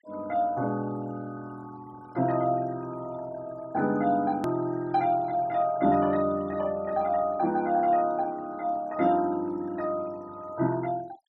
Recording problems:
noise reduction artefacts; signal-to-artefact ratio 24 dB
click at an edit; at 4.5 s

